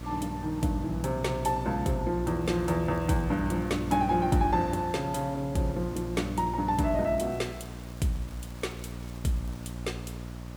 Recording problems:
hum; 60 Hz, harmonics up to 900 Hz, SNR 9 dB
hiss; SNR 21 dB
crackling; from 2.5 to 4 s and from 6.5 to 9.5 s; loose cable, SNR 28 dB

